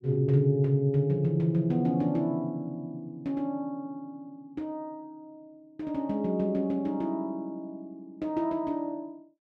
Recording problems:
none

